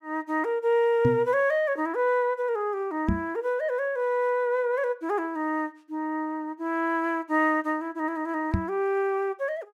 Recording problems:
knock on the microphone; at 1 s, at 3 s and at 8.5 s; peak +5 dB vs average level

